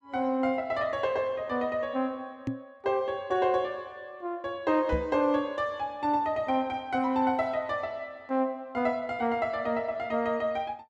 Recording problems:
microphone bump; at 2.5 s and at 5 s; peak +1 dB vs average level

